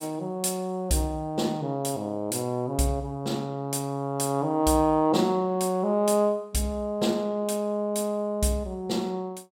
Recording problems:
none

